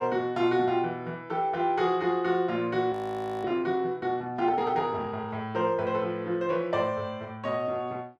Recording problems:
audio freezing; at 3 s for 0.5 s

